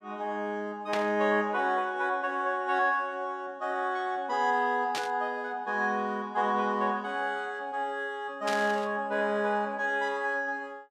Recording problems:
static burst; at 1 s, at 5 s and at 8.5 s; peak 0 dB vs average level

